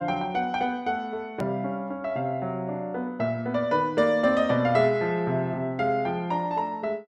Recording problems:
hard cut with a click; at 1.5 s

